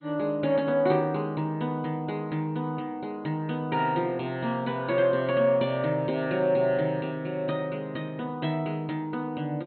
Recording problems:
lossy compression; MP2, log-spectral distance 2 dB, nothing above 4.2 kHz

